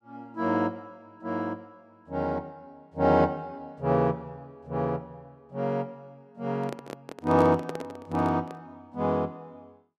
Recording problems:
microphone handling noise; from 6.5 to 8.5 s; peak -3 dB vs average level

